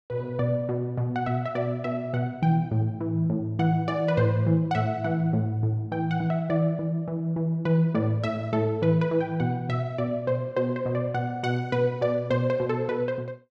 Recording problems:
none

